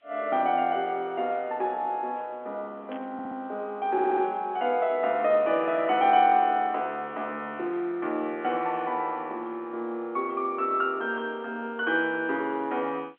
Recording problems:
telephone audio; 220 Hz to 3.3 kHz, G.711
background hiss; SNR 41 dB
burst of static; at 3 s; peak -14 dB vs average level
stutter; at 3 s and at 4 s

